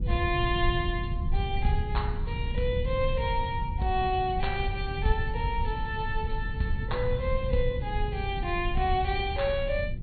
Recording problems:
low-pass filter; nothing above 4.4 kHz
electrical hum; 60 Hz, harmonics up to 840 Hz, SNR 18 dB
rumble; below 96 Hz, SNR 2 dB

